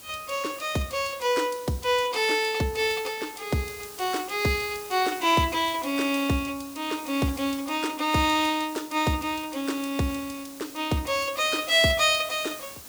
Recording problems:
background hiss; SNR 16 dB

